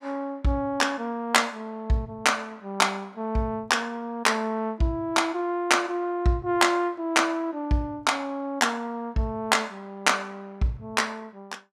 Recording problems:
none

